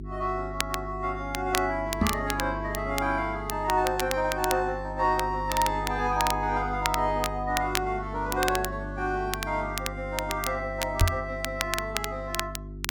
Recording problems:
hum; 50 Hz, harmonics up to 400 Hz, SNR 9 dB
crackling; vinyl, SNR 6 dB
knock on the microphone; at 2 s and at 11 s; peak +9 dB vs average level

